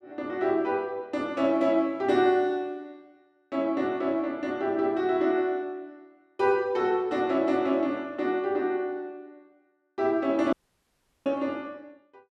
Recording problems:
audio cutting out; at 11 s for 0.5 s

